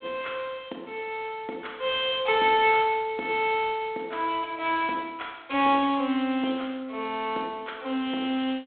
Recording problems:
telephone audio; 220 Hz to 3.9 kHz, G.726

